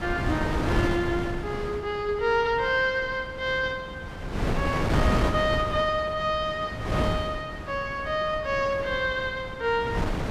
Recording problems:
wind noise; below 600 Hz, SNR 4 dB

